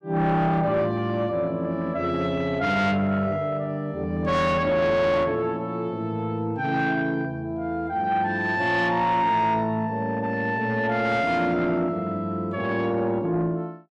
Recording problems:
distortion; soft clipping, signal-to-distortion ratio 12 dB

